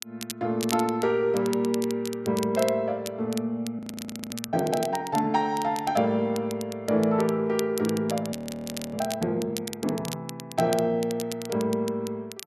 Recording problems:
crackling; vinyl, SNR 13 dB
audio freezing; at 4 s for 0.5 s and at 8.5 s for 0.5 s

